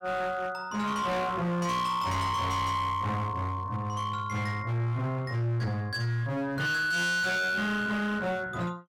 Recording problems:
distortion; hard clipping, signal-to-distortion ratio 7 dB

